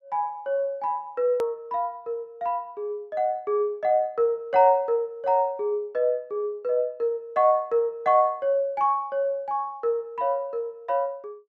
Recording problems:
click at an edit; at 1.5 s

